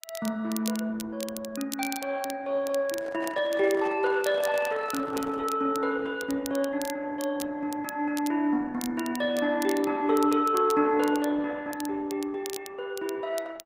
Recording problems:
codec artefacts; Opus, log-spectral distance 3 dB
crackle; vinyl, SNR 14 dB
handling noise; from 3 to 5.5 s; peak -10 dB vs average level

